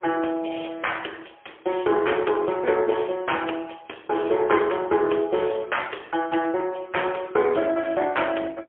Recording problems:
phone line; 280 Hz to 3.4 kHz, AMR-NB, then MP3

